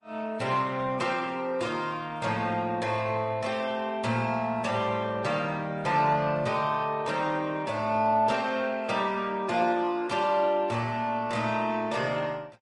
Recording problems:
lossy codec; Opus, then MP3, log-spectral distance 3 dB, nothing above 11 kHz

